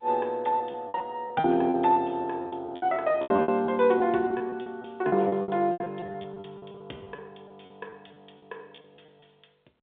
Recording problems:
telephone audio; 280 Hz to 3.8 kHz, G.711
packet loss; 17% of the sound replaced, filled with repeated pitch periods

